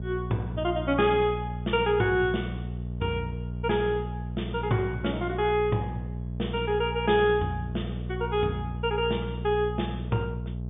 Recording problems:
treble cut off; nothing above 3.6 kHz
hum; 60 Hz, harmonics up to 660 Hz, SNR 7 dB

